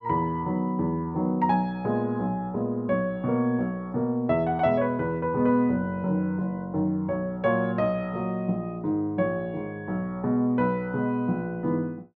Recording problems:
none

